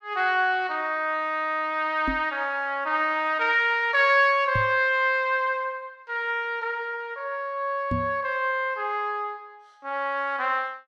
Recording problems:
microphone thump; at 2 s, at 4.5 s and at 8 s; peak -1 dB vs average level

